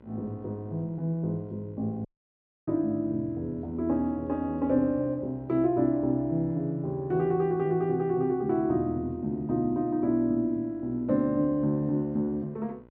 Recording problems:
electrical hum; 60 Hz, harmonics up to 1.6 kHz, SNR 27 dB
dropout; at 2 s for 0.5 s

